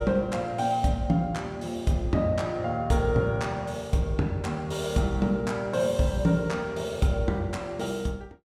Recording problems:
none

